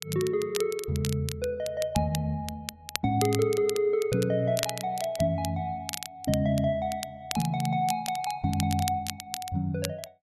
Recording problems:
crackle; vinyl, SNR 10 dB

